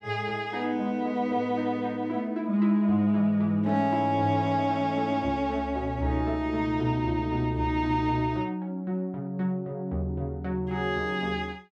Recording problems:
none

